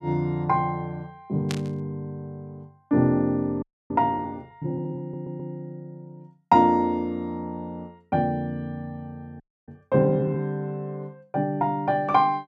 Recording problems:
static burst; at 1.5 s; peak -2 dB vs average level
frozen audio; at 3.5 s and at 9.5 s
audio stuttering; at 5 s

